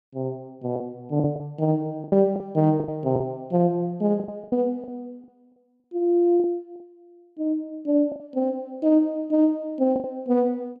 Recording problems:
packet loss; 9% of the sound replaced, filled with the last packet

